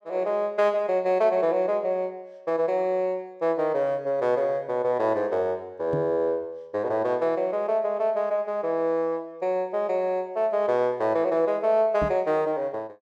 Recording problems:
microphone thump; at 6 s and at 12 s; peak -3 dB vs average level

